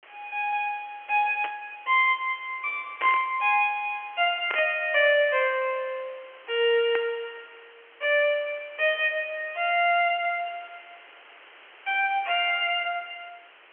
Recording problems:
phone line; 280 Hz to 3.2 kHz, G.711
background hiss; SNR 25 dB
burst of static; 4 times, first at 1.5 s; peak -3 dB vs average level

